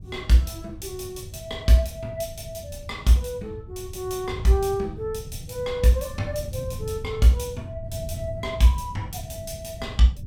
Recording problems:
wind on the microphone; below 130 Hz, SNR 12 dB

